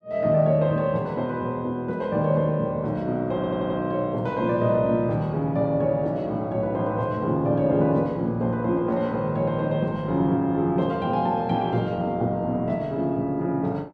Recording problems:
stutter; at 3.5 s

